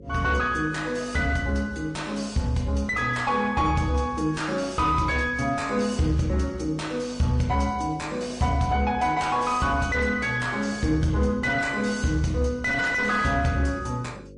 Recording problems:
lossy codec; MP3, log-spectral distance 2 dB, nothing above 8.2 kHz
distorted audio; soft clipping, signal-to-distortion ratio 10 dB
electrical hum; 50 Hz, harmonics up to 550 Hz, SNR 21 dB

